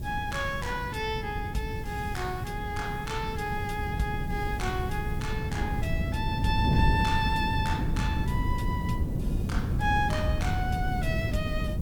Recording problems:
background hiss; slope +1 dB per octave, SNR 22 dB
wind on the microphone; below 170 Hz, SNR -1 dB

